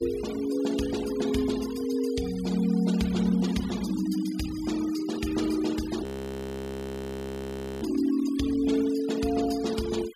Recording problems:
denoising artefacts; signal-to-artefact ratio 15 dB
audio freezing; at 6 s for 2 s

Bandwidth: 15 kHz